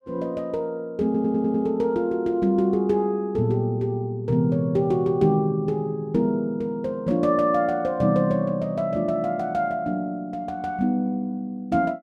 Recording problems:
stutter; at 1 s

